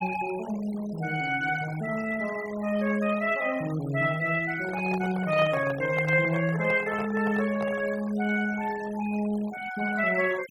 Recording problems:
noise reduction artefacts; signal-to-artefact ratio 17 dB
handling noise; from 4.5 to 8 s; peak -5 dB vs average level

